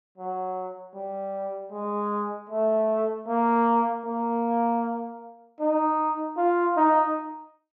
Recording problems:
none

